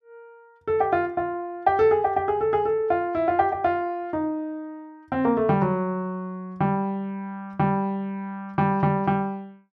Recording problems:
none

